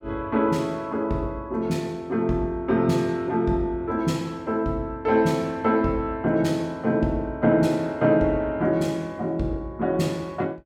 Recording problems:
none

